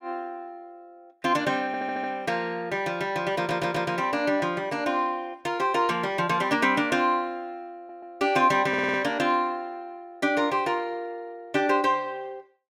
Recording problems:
stutter; 4 times, first at 1.5 s

